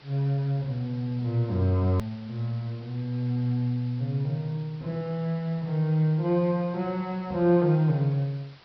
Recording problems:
treble cut off; nothing above 5.5 kHz
hiss; SNR 26 dB
edit click; at 2 s

